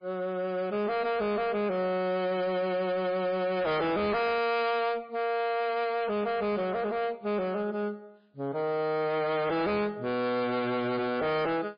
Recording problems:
codec artefacts; MP3, log-spectral distance 2 dB, nothing above 4.2 kHz
distortion; hard clipping, signal-to-distortion ratio 6 dB

